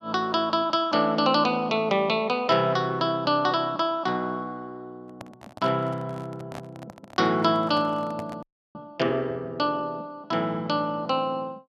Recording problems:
microphone handling noise; from 5 to 9 s; peak -10 dB vs average level
frozen audio; at 8.5 s

